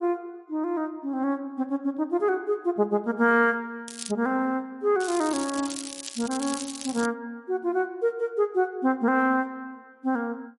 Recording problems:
lossy codec; MP3, log-spectral distance 3 dB
crackle; at 4 s and from 5 to 7 s; loose cable, SNR 10 dB

